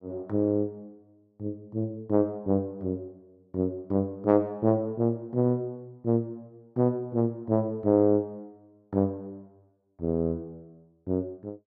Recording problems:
none

